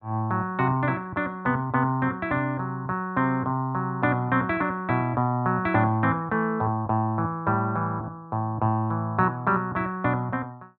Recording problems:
none

